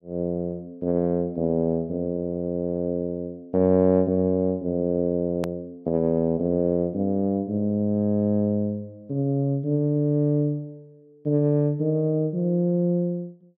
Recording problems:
edit click; at 5.5 s

